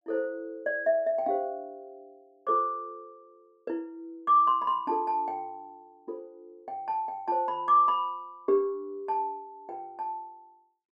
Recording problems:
none

